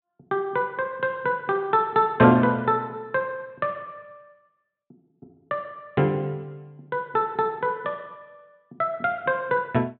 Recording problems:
treble missing; nothing above 4 kHz

